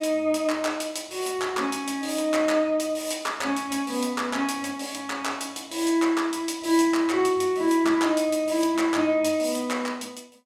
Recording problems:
none

